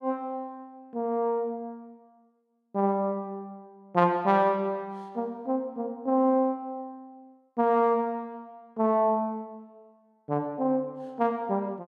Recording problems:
none

